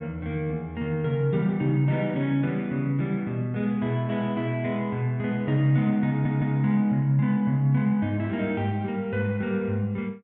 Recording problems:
audio stuttering; at 6 s

